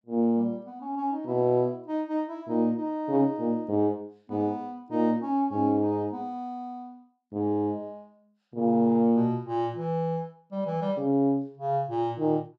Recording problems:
none

